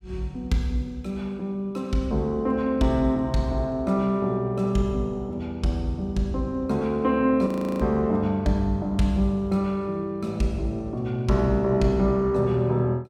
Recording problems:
audio freezing; at 7.5 s

